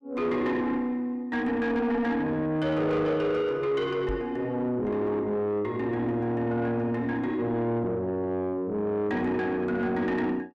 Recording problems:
distortion; soft clipping, signal-to-distortion ratio 11 dB
microphone thump; at 4 s; peak -3 dB vs average level

